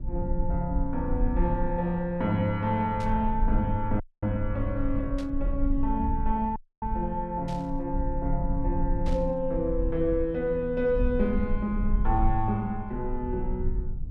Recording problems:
low-frequency rumble; below 56 Hz, SNR 4 dB
burst of static; 4 times, first at 3 s; peak -12 dB vs average level
dropout; at 4 s and at 6.5 s

